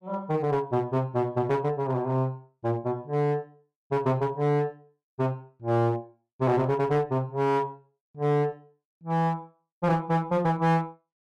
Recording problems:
distorted audio; hard clipping, uneven, signal-to-distortion ratio 11 dB

